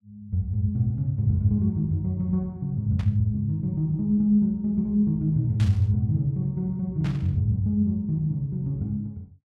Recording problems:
static burst; at 3 s, at 5.5 s and at 7 s; peak -11 dB vs average level

